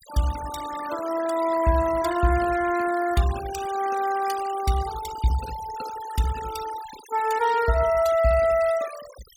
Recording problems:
noise reduction artefacts; signal-to-artefact ratio 14 dB

